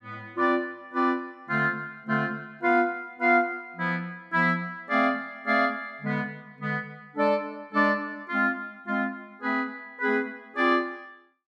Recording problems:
none

